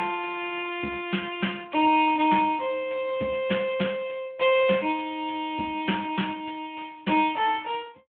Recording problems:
telephone audio; 130 Hz to 3.5 kHz, Speex

